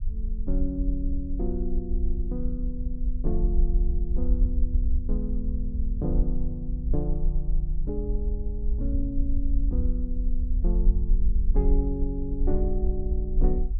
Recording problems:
rumble; below 50 Hz, SNR -5 dB

